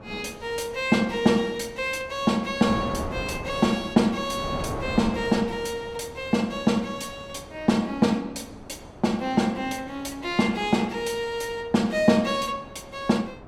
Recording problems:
wind noise; below 720 Hz, SNR 14 dB

